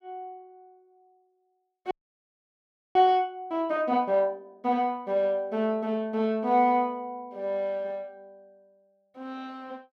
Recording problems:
frozen audio; at 2 s for 1 s

